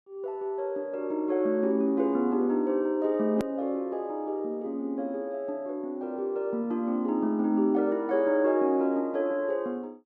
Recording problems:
edit click; at 3.5 s

